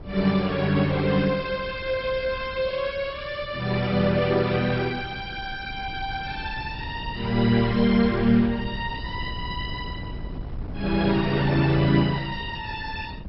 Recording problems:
lossy codec; MP2, log-spectral distance 3 dB, nothing above 5.5 kHz
wind noise; below 170 Hz, SNR 13 dB

